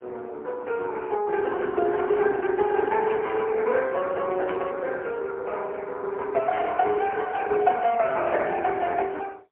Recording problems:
phone line; 320 Hz to 3.1 kHz, AMR-NB, then MP3
static burst; at 3 s, at 4.5 s and at 6.5 s; peak -6 dB vs average level

